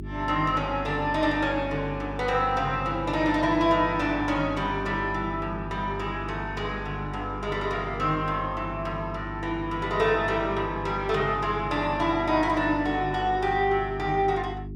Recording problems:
hum; 50 Hz, harmonics up to 400 Hz, SNR 11 dB

